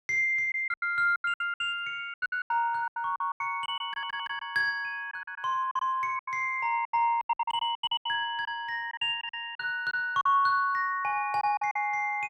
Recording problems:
lost packets; 16% of the sound replaced, filled with silence
stutter; at 4 s

